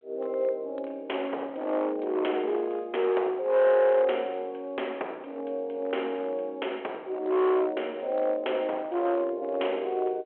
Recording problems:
phone line; 390 Hz to 3.3 kHz, G.726
distorted audio; hard clipping, uneven, signal-to-distortion ratio 13 dB

